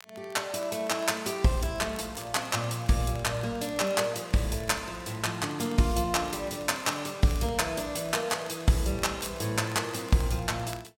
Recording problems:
crackle; vinyl, SNR 23 dB

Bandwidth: 16.5 kHz